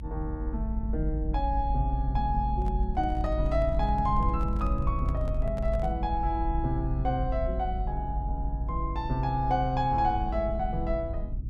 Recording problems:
low-frequency rumble; below 62 Hz, strongest tone 52 Hz, SNR 1 dB
handling noise; from 2.5 to 6 s; peak -9 dB vs average level

